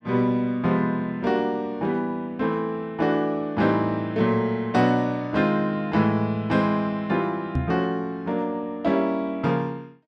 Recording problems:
microphone bump; at 7.5 s; peak +3 dB vs average level

